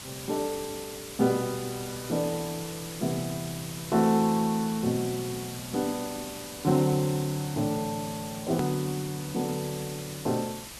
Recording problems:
background hiss; slope 0 dB per octave, SNR 10 dB
click at an edit; at 8.5 s

